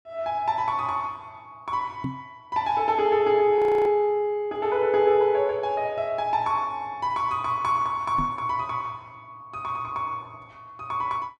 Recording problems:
microphone thump; at 2 s and at 8 s; peak -2 dB vs average level
frozen audio; at 3.5 s

